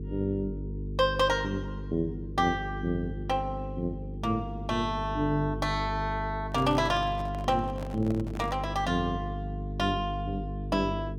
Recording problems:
electrical hum; 50 Hz, harmonics up to 450 Hz, SNR 7 dB
handling noise; from 6.5 to 8.5 s; peak -6 dB vs average level

